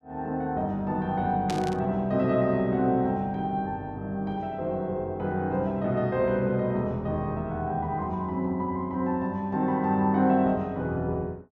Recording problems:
burst of static; at 1.5 s; peak -4 dB vs average level

